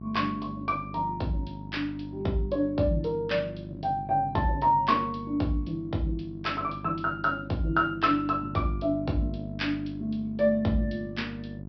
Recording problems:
treble missing; nothing above 5.5 kHz
electrical hum; 50 Hz, harmonics up to 700 Hz, SNR 12 dB

